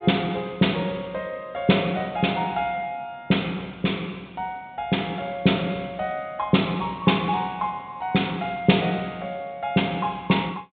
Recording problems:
treble missing; nothing above 4 kHz

